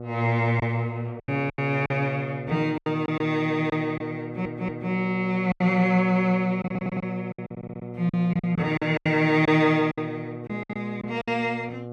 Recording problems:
hum; 60 Hz, harmonics up to 1.3 kHz, SNR 12 dB
lost packets; 10% of the sound replaced, filled with silence
audio stuttering; at 4 s, at 6.5 s and at 7.5 s

